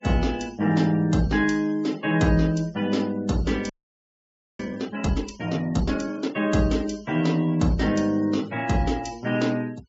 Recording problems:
low-pass filter; nothing above 8 kHz
noise reduction artefacts; signal-to-artefact ratio 22 dB
audio freezing; at 3.5 s for 1 s

